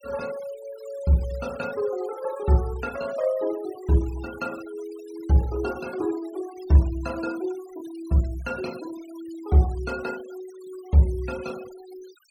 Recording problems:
denoising artefacts; signal-to-artefact ratio 21 dB

